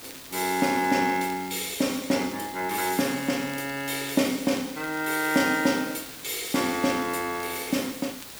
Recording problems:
hiss; slope -1 dB per octave, SNR 14 dB
crackle; vinyl, SNR 22 dB

